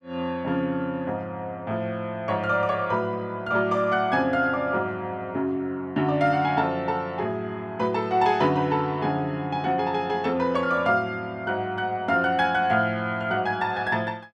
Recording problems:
none

